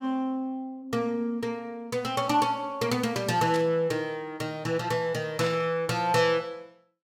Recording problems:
static burst; at 3.5 s and at 5.5 s; peak -5 dB vs average level

